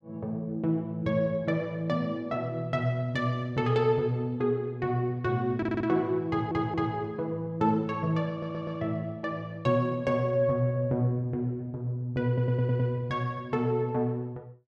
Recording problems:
stutter; 4 times, first at 5.5 s

